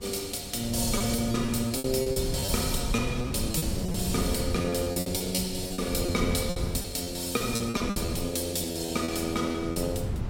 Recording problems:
wind noise; below 180 Hz, SNR 7 dB
packet loss; 12% of the sound replaced, filled with repeated pitch periods

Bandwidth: 16.5 kHz